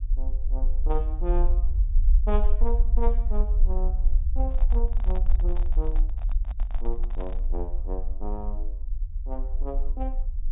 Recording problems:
treble missing; nothing above 3.7 kHz
low-frequency rumble; below 46 Hz, SNR -9 dB
handling noise; from 4.5 to 7.5 s; peak -3 dB vs average level

